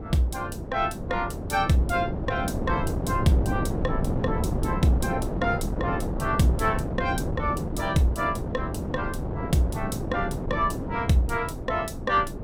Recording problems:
wind on the microphone; below 360 Hz, SNR 3 dB

